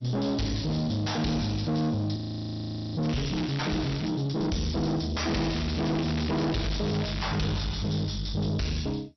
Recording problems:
lossy compression; MP2, log-spectral distance 5 dB, nothing above 5.8 kHz
distortion; soft clipping, signal-to-distortion ratio 4 dB
audio freezing; at 2 s for 1 s
crackling; from 3 to 4 s and from 5 to 7 s; loose cable, SNR 11 dB

